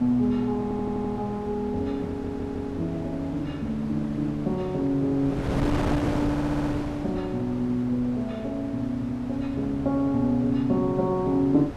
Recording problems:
wind noise; below 620 Hz, SNR 8 dB
audio stuttering; at 0.5 s, at 2 s and at 6.5 s

